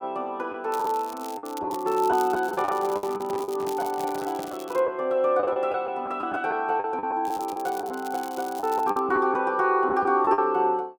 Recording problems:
packet loss; 10% of the sound replaced, filled with the last packet
crackle; from 0.5 to 5 s and from 7 to 9 s; loose cable, SNR 19 dB
microphone handling noise; from 2.5 to 4.5 s; peak -9 dB vs average level

